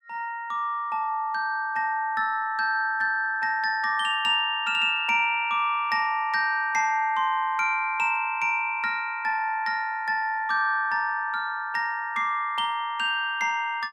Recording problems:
none

